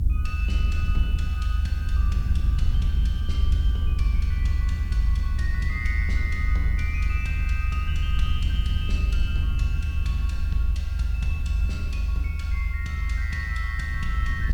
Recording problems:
hiss; slope +2 dB per octave, SNR 23 dB
low-frequency rumble; below 76 Hz, strongest tone 52 Hz, SNR -10 dB

